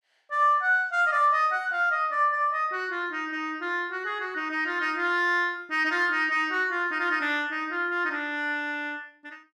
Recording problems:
none

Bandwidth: 14.5 kHz